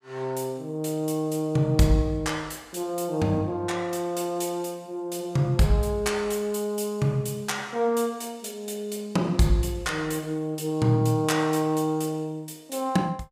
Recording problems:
none

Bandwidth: 15.5 kHz